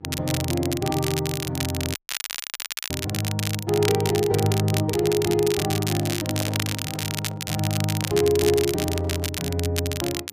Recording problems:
hum; 50 Hz, harmonics up to 1.4 kHz, SNR 27 dB
crackling; vinyl, SNR 5 dB
audio cutting out; at 2 s for 1 s
microphone handling noise; from 6 to 9.5 s; peak -6 dB vs average level

